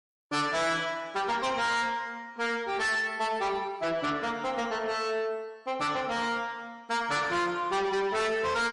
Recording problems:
lossy codec; MP3, log-spectral distance 2 dB, nothing above 10.4 kHz
distorted audio; soft clipping, signal-to-distortion ratio 7 dB

